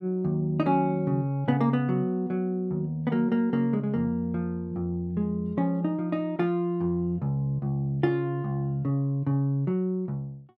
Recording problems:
none

